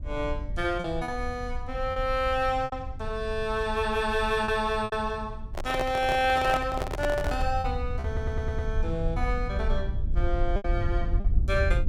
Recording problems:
rumble; below 74 Hz, SNR 5 dB
packet loss; 5% of the sound replaced, filled with repeated pitch periods
microphone handling noise; from 5.5 to 7.5 s; peak +1 dB vs average level
audio stuttering; at 8 s

